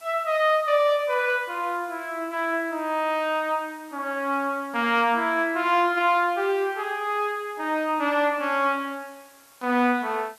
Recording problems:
background hiss; slope 0 dB per octave, SNR 27 dB

